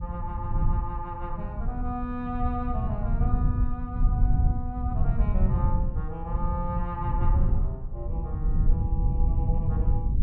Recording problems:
low-frequency rumble; below 92 Hz, SNR -7 dB

